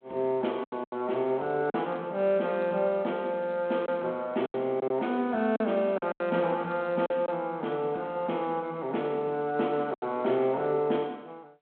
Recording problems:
phone line; 190 Hz to 3.4 kHz, G.726
lost packets; 6% of the sound replaced, filled with silence

